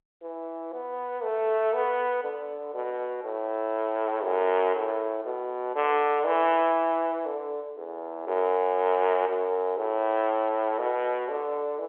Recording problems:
telephone audio; 340 Hz to 3.4 kHz, G.711

